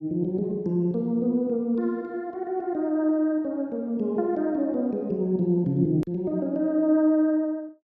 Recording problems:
click at an edit; at 6 s

